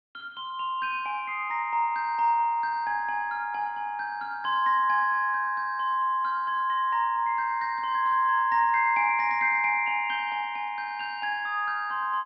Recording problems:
low-pass filter; nothing above 5.6 kHz

